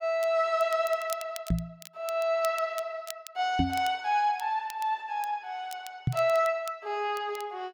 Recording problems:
crackling; vinyl, SNR 17 dB
microphone bump; at 1.5 s, at 3.5 s and at 6 s; peak +6 dB vs average level

